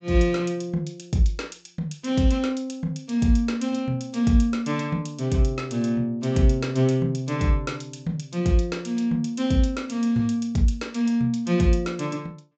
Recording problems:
low-pass filter; nothing above 8 kHz

